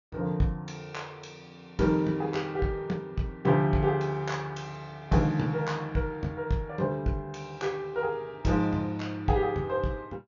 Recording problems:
treble cut off; nothing above 7 kHz

